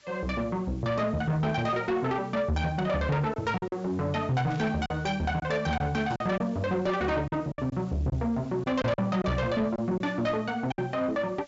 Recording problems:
treble cut off; nothing above 8 kHz
distorted audio; soft clipping, signal-to-distortion ratio 11 dB
hiss; SNR 28 dB
lost packets; 5% of the sound replaced, filled with silence
static burst; at 4.5 s, at 6 s and at 10 s; peak -14 dB vs average level

